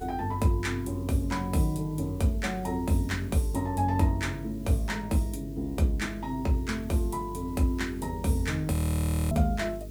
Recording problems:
hum; 50 Hz, harmonics up to 450 Hz, SNR 13 dB
background hiss; slope +2 dB per octave, SNR 27 dB
frozen audio; at 8.5 s for 0.5 s

